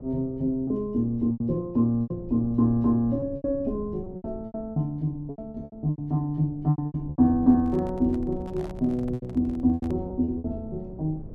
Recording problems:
rumble; below 190 Hz, SNR 17 dB
lost packets; 13% of the sound replaced, filled with repeated pitch periods
microphone handling noise; from 7.5 to 10 s; peak -12 dB vs average level

